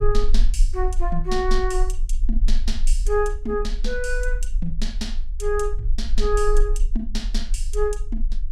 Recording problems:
low-frequency rumble; below 36 Hz, strongest tone 22 Hz, SNR -1 dB

